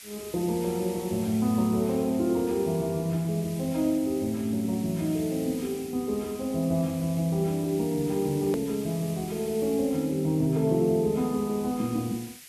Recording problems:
hiss; SNR 16 dB
hard cut with a click; at 8.5 s

